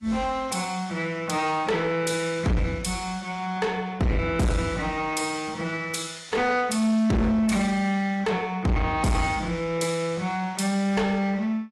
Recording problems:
lossy compression; AAC, log-spectral distance 3 dB, nothing above 11.3 kHz
distortion; soft clipping, signal-to-distortion ratio 6 dB

